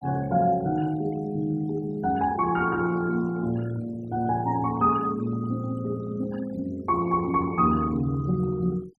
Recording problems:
noise reduction artefacts; signal-to-artefact ratio 23 dB

